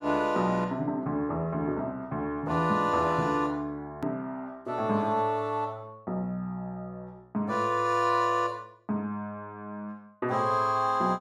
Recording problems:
hard cut with a click; at 4 s

